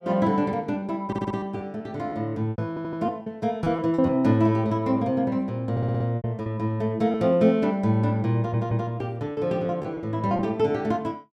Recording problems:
packet loss; 7% of the sound replaced, filled with repeated pitch periods
audio stuttering; 4 times, first at 1 s

